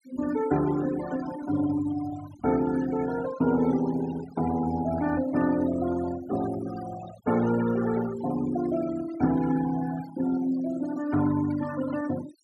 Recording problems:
noise reduction artefacts; signal-to-artefact ratio 14 dB

